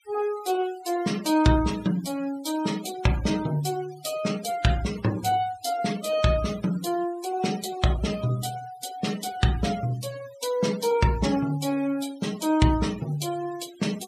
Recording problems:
noise reduction artefacts; signal-to-artefact ratio 15 dB

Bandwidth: 15 kHz